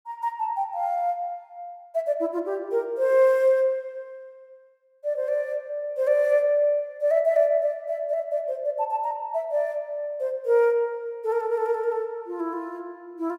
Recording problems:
none

